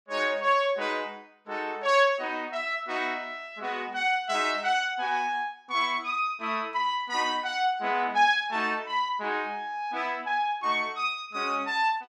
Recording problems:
none

